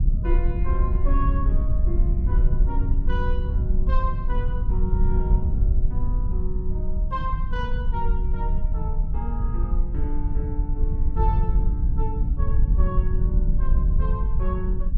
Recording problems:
wind noise; below 60 Hz, SNR -9 dB

